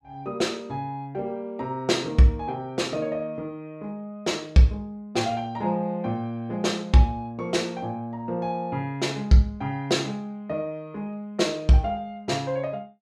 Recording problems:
none

